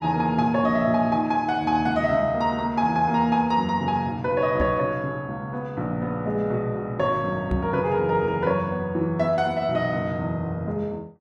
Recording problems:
knock on the microphone; at 4.5 s and at 7.5 s; peak +1 dB vs average level

